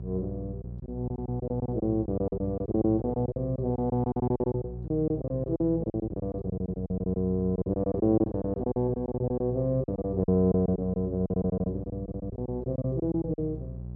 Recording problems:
hum; 60 Hz, harmonics up to 540 Hz, SNR 11 dB
lost packets; 17% of the sound replaced, filled with silence

